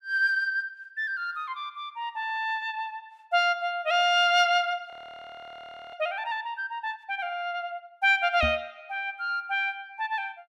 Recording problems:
audio freezing; at 5 s for 1 s
microphone thump; at 8.5 s; peak -1 dB vs average level

